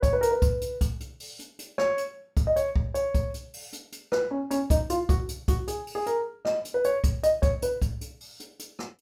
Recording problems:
none

